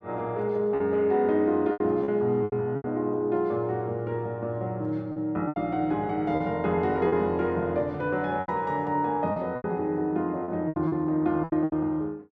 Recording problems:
lost packets; 9% of the sound replaced, filled with repeated pitch periods

